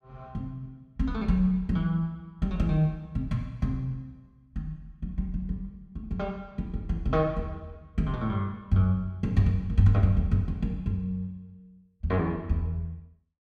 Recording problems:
none

